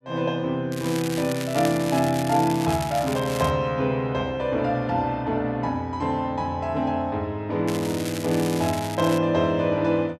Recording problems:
crackle; from 0.5 to 3.5 s and from 7.5 to 9 s; loose cable, SNR 11 dB

